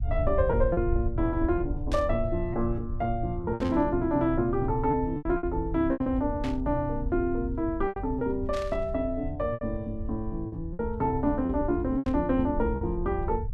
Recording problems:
low-frequency rumble; below 84 Hz, SNR 7 dB
packet loss; 7% of the sound replaced, filled with repeated pitch periods
burst of static; 5 times, first at 2 s; peak -7 dB vs average level

